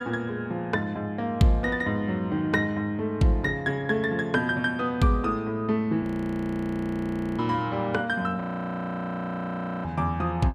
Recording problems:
frozen audio; at 6 s for 1.5 s and at 8.5 s for 1.5 s

